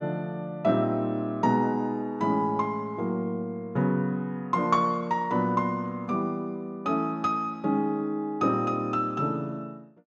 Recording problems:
none

